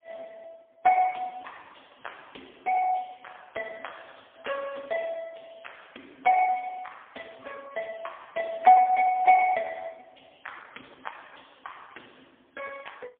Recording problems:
phone line; 240 Hz to 3.3 kHz, AMR-NB, then MP3

